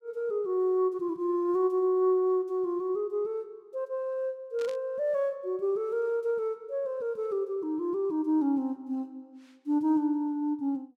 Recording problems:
static burst; at 4.5 s; peak -13 dB vs average level

